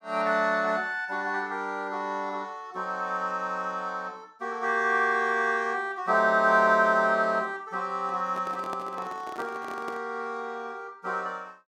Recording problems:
handling noise; from 8 to 10 s; peak -8 dB vs average level

